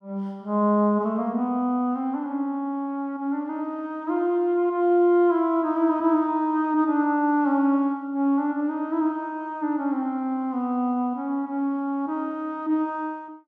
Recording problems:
none

